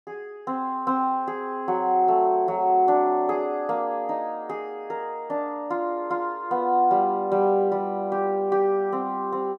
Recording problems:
none

